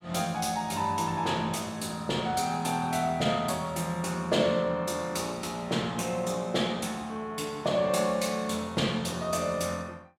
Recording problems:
none

